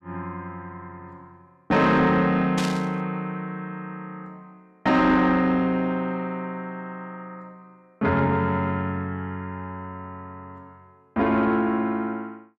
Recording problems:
distorted audio; soft clipping, signal-to-distortion ratio 10 dB
static burst; at 2.5 s; peak -2 dB vs average level

